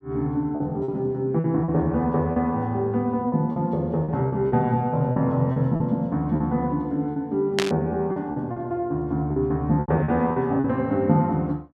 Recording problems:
lost packets; 8% of the sound replaced, filled with repeated pitch periods
static burst; at 7.5 s; peak +4 dB vs average level

